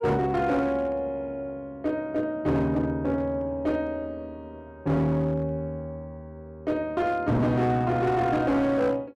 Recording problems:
distorted audio; hard clipping, signal-to-distortion ratio 11 dB

